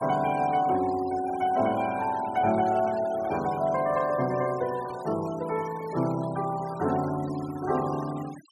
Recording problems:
denoising artefacts; signal-to-artefact ratio 17 dB

